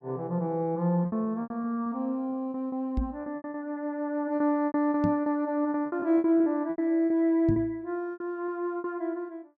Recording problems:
lost packets; 13% of the sound replaced, filled with repeated pitch periods
knock on the microphone; at 3 s, at 5 s and at 7.5 s; peak +3 dB vs average level

